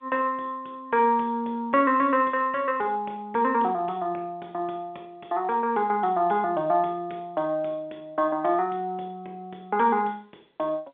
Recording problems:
telephone audio; 300 Hz to 3.4 kHz, G.711

